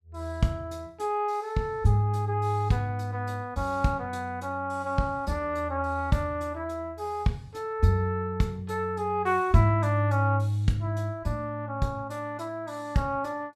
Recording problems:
none

